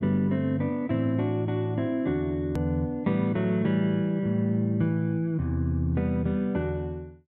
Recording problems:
edit click; at 2.5 s

